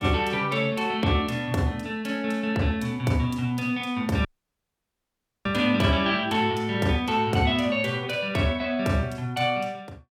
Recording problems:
audio cutting out; at 4.5 s for 1 s

